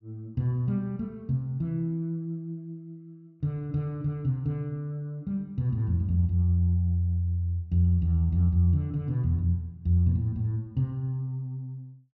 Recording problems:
treble missing; nothing above 8 kHz

